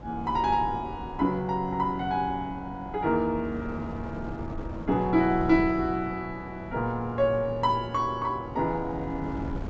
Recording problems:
treble missing; nothing above 8 kHz
wind on the microphone; below 320 Hz, SNR 12 dB

